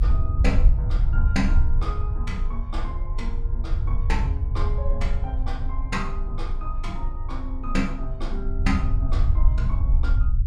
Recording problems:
low-frequency rumble; below 66 Hz, strongest tone 24 Hz, SNR -7 dB

